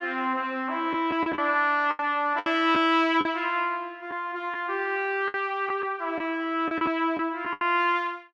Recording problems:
packet loss; 7% of the sound replaced, filled with the last packet

